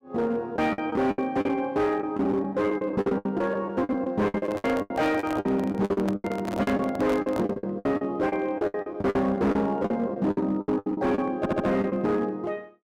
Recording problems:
distorted audio; hard clipping, signal-to-distortion ratio 11 dB
packet loss; 18% of the sound replaced, filled with the last packet
handling noise; from 4.5 to 7.5 s; peak -2 dB vs average level
audio stuttering; at 11 s

